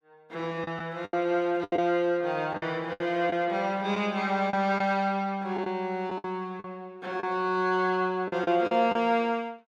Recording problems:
lost packets; 8% of the sound replaced, filled with the last packet

